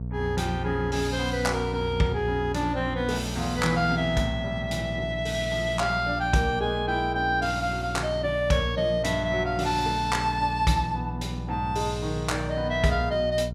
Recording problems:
electrical hum; 60 Hz, harmonics up to 480 Hz, SNR 8 dB

